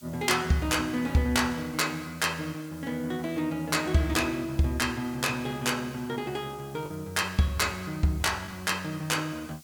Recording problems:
background hiss; slope +3 dB per octave, SNR 23 dB
lost packets; 0.6% of the sound replaced, filled with the last packet

